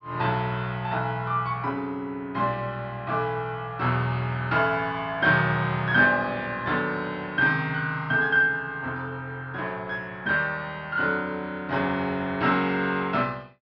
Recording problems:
treble cut off; nothing above 5.5 kHz

